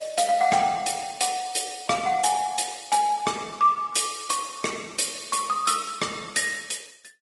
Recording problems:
lossy codec; Opus, then Vorbis, log-spectral distance 8 dB, nothing above 11 kHz

